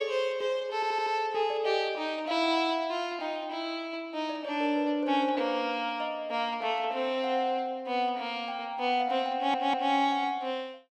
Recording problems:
audio stuttering; at 1 s and at 9.5 s

